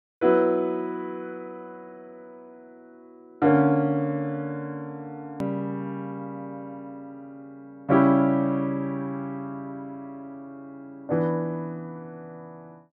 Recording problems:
hard cut with a click; at 5.5 s

